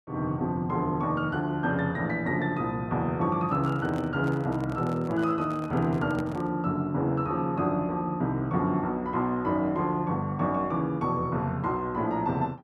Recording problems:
handling noise; from 3.5 to 6.5 s; peak -7 dB vs average level

